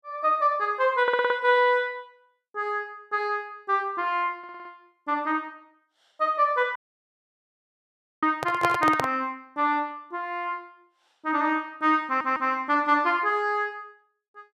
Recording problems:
audio stuttering; at 1 s, at 4.5 s and at 12 s
audio cutting out; at 7 s for 1.5 s
microphone handling noise; at 8 s; peak +2 dB vs average level

